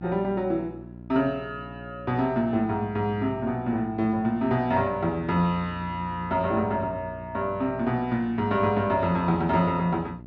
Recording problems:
hum; 60 Hz, harmonics up to 720 Hz, SNR 16 dB

